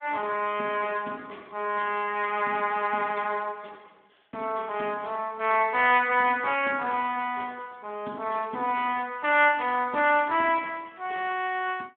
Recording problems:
telephone audio; 170 Hz to 3.5 kHz, Speex

